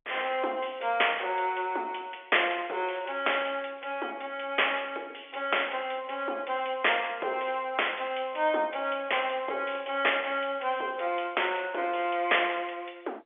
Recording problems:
phone line; 320 Hz to 3.5 kHz, G.711

